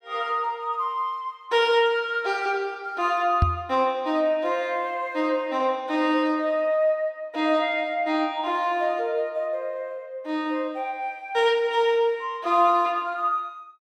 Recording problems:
microphone thump; at 3.5 s; peak +7 dB vs average level

